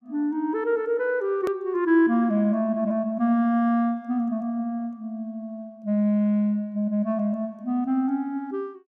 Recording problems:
edit click; at 1.5 s

